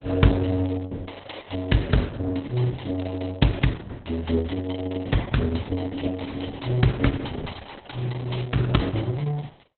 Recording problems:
lossy compression; Opus, log-spectral distance 6 dB, nothing above 4 kHz

